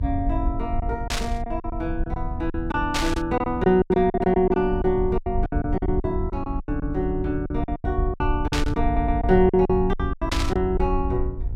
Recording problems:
hum; 60 Hz, harmonics up to 1.4 kHz, SNR 25 dB
rumble; below 76 Hz, SNR 6 dB
lost packets; 14% of the sound replaced, filled with silence
static burst; 4 times, first at 1 s; peak +3 dB vs average level
stutter; at 9 s

